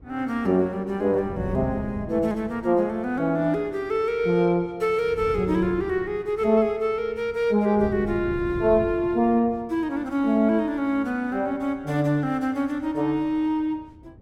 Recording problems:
wind on the microphone; below 230 Hz, SNR 16 dB

